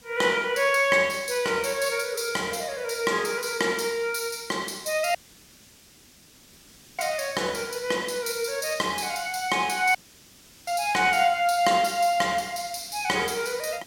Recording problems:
hiss; SNR 24 dB
dropout; at 5 s for 2 s and at 10 s for 0.5 s

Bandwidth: 16.5 kHz